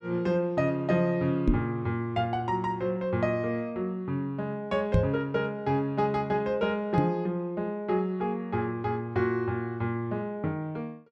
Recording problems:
microphone thump; at 1.5 s, at 5 s and at 7 s; peak +8 dB vs average level

